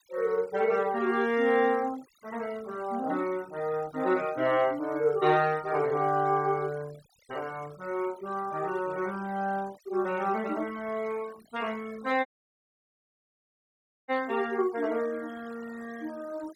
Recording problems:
noise reduction artefacts; signal-to-artefact ratio 21 dB
dropout; at 12 s for 2 s

